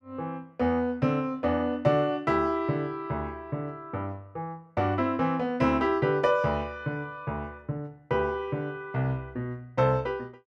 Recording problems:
none

